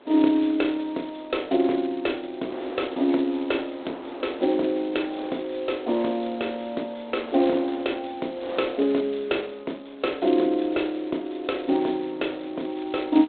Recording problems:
telephone audio; 240 Hz to 3.7 kHz, G.726
wind noise; below 990 Hz, SNR 18 dB

